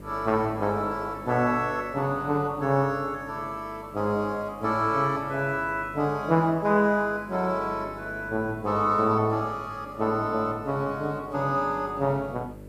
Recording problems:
electrical hum; 50 Hz, harmonics up to 600 Hz, SNR 20 dB
hiss; slope -6 dB per octave, SNR 30 dB

